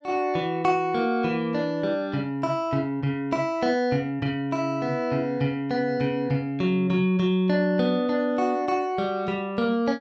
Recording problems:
none

